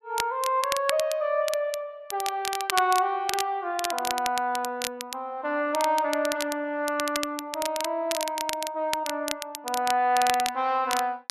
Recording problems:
crackle; vinyl, SNR 7 dB

